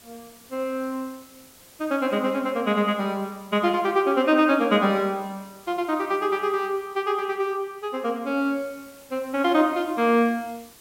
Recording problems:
hiss; slope -2 dB per octave, SNR 25 dB

